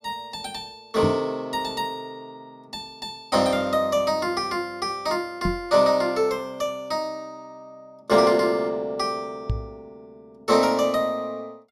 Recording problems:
knock on the microphone; at 1 s, at 5.5 s and at 9.5 s; peak +3 dB vs average level

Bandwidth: 15 kHz